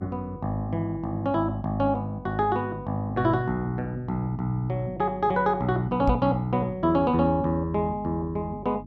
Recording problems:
hum; 50 Hz, harmonics up to 300 Hz, SNR 18 dB
microphone bump; at 6 s; peak +3 dB vs average level

